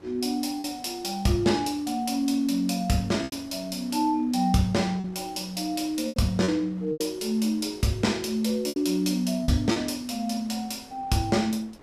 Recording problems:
wind on the microphone; below 900 Hz, SNR 25 dB
packet loss; 4% of the sound replaced, filled with repeated pitch periods

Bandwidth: 14.5 kHz